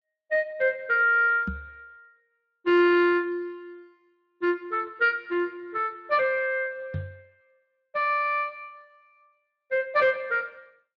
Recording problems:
lossy codec; Speex, log-spectral distance 2 dB
microphone bump; at 1.5 s and at 7 s; peak -4 dB vs average level

